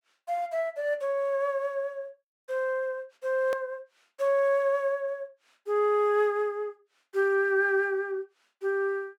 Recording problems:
hard cut with a click; at 3.5 s

